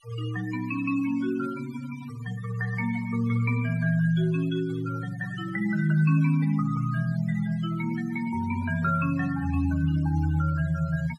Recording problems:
noise reduction artefacts; signal-to-artefact ratio 19 dB

